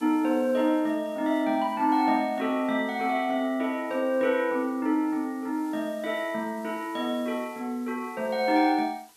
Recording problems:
background hiss; slope 0 dB per octave, SNR 27 dB

